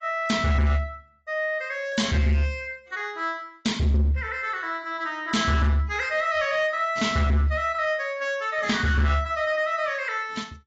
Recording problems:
lossy codec; AAC, log-spectral distance 2 dB, nothing above 7.3 kHz
distorted audio; hard clipping, signal-to-distortion ratio 11 dB

